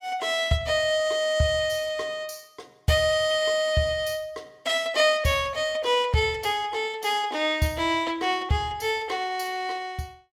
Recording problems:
none

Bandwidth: 17 kHz